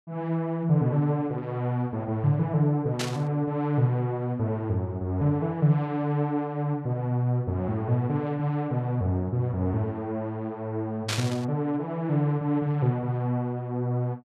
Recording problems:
static burst; at 3 s and at 11 s; peak +1 dB vs average level

